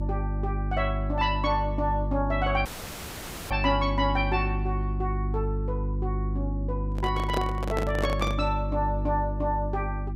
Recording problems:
hum; 50 Hz, harmonics up to 350 Hz, SNR 1 dB
dropout; at 2.5 s for 1 s
handling noise; from 7 to 8.5 s; peak +3 dB vs average level

